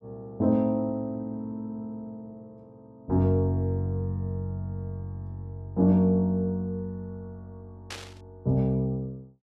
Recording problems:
burst of static; at 8 s; peak -5 dB vs average level

